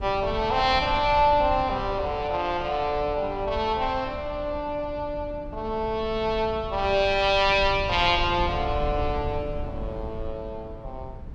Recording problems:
rumble; below 120 Hz, SNR 12 dB

